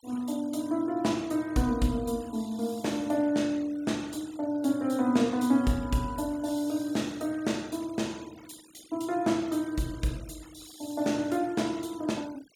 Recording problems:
denoising artefacts; signal-to-artefact ratio 23 dB

